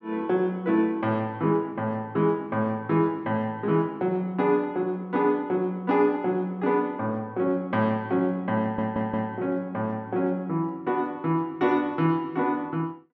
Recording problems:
audio stuttering; at 8.5 s

